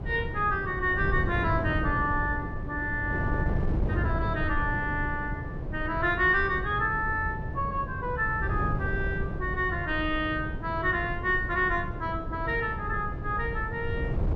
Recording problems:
wind on the microphone; below 180 Hz, SNR 5 dB

